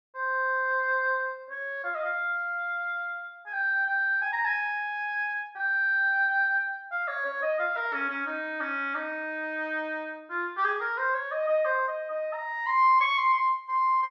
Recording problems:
none

